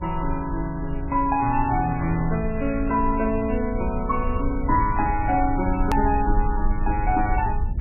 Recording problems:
codec artefacts; MP3, log-spectral distance 2 dB, nothing above 14.6 kHz
low-frequency rumble; below 64 Hz, SNR 6 dB
edit click; at 6 s

